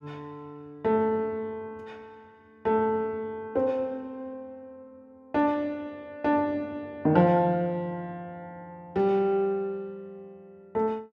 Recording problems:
none

